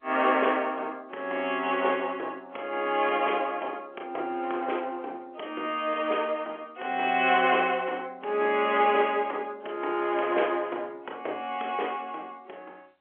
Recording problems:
telephone audio; 300 Hz to 3.3 kHz, G.711

